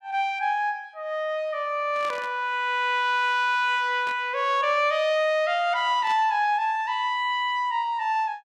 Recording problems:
static burst; at 2 s, at 4 s and at 6 s; peak -12 dB vs average level

